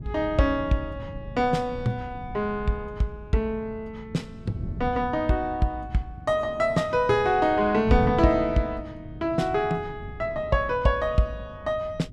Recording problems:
wind noise; below 170 Hz, SNR 13 dB

